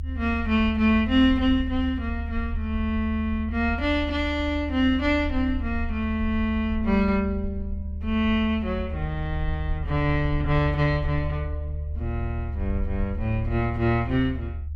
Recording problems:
low-frequency rumble; below 76 Hz, strongest tone 74 Hz, SNR 7 dB

